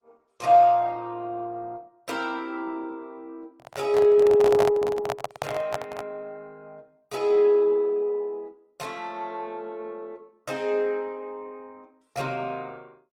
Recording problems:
codec artefacts; Opus, log-spectral distance 2 dB, nothing above 18.3 kHz
microphone handling noise; from 3.5 to 6 s; peak 0 dB vs average level

